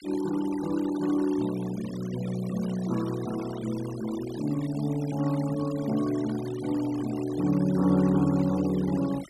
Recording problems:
denoising artefacts; signal-to-artefact ratio 17 dB

